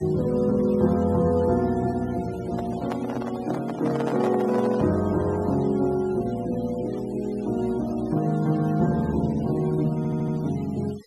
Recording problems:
denoising artefacts; signal-to-artefact ratio 21 dB
handling noise; from 2.5 to 5 s; peak -3 dB vs average level
stutter; at 10 s

